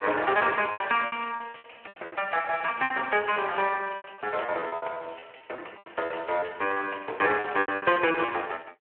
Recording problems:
telephone audio; 370 Hz to 3.1 kHz, Speex
packet loss; 16% of the sound replaced, filled with repeated pitch periods

